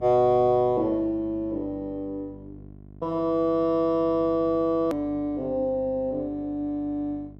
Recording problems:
mains hum; 50 Hz, harmonics up to 700 Hz, SNR 20 dB
edit click; at 5 s

